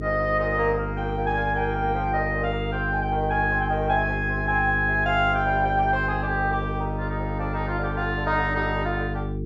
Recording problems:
treble cut off; nothing above 8 kHz
hum; 50 Hz, harmonics up to 450 Hz, SNR 5 dB

